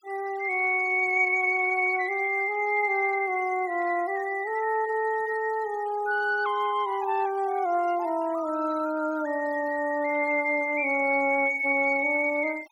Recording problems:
noise reduction artefacts; signal-to-artefact ratio 24 dB

